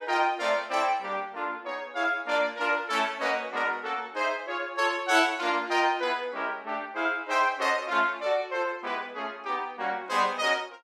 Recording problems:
none

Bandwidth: 14.5 kHz